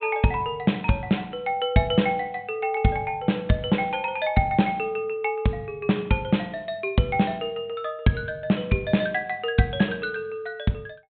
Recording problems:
low-pass filter; nothing above 4 kHz

